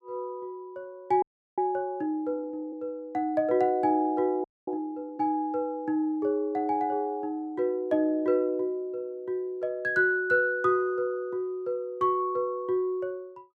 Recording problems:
frozen audio; at 1 s and at 4.5 s

